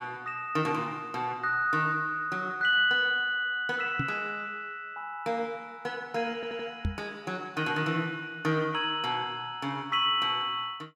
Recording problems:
knock on the microphone; at 4 s and at 7 s; peak +2 dB vs average level
audio stuttering; at 6.5 s

